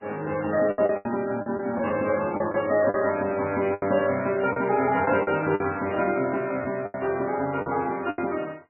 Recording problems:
lossy codec; MP2, then MP3, log-spectral distance 4 dB, nothing above 2.4 kHz
packet loss; 9% of the sound replaced, filled with the last packet
burst of static; at 1 s, at 2.5 s and at 7.5 s; peak -15 dB vs average level

